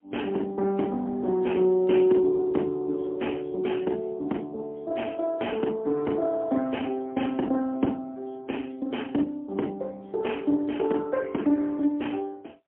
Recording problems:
telephone audio; 190 Hz to 3.3 kHz, AMR-NB, then MP3

